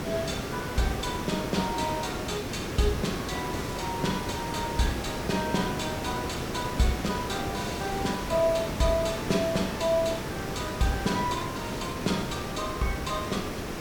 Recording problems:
hiss; slope -5 dB per octave, SNR 3 dB

